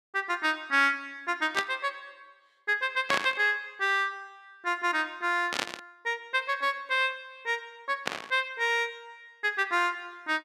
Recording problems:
burst of static; 4 times, first at 1.5 s; peak +4 dB vs average level

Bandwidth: 15 kHz